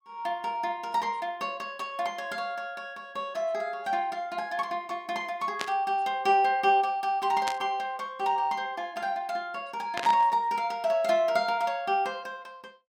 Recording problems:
burst of static; at 5.5 s, at 7.5 s and at 10 s; peak +1 dB vs average level

